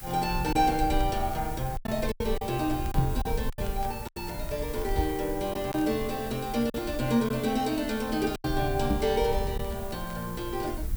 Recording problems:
hiss; SNR 14 dB
low-frequency rumble; below 68 Hz, SNR 9 dB
crackle; vinyl, SNR 27 dB
packet loss; 6% of the sound replaced, filled with silence
microphone bump; at 3 s, at 5 s and at 9 s; peak +5 dB vs average level

